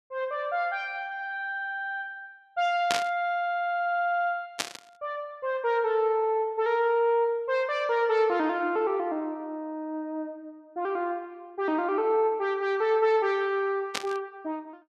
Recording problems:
burst of static; at 3 s, at 4.5 s and at 14 s; peak +4 dB vs average level

